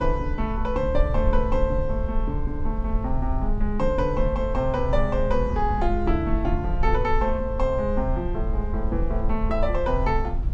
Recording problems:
low-frequency rumble; below 58 Hz, SNR 2 dB

